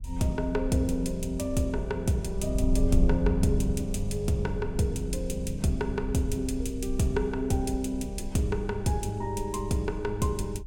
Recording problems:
wind on the microphone; below 56 Hz, SNR 7 dB

